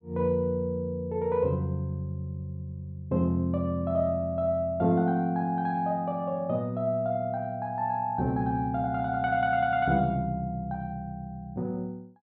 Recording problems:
treble cut off; nothing above 4.6 kHz

